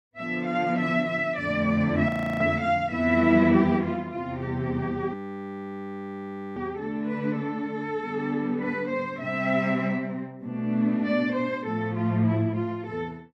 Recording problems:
frozen audio; at 2 s and at 5 s for 1.5 s

